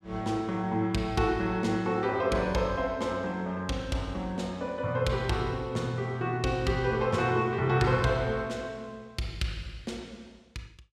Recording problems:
none

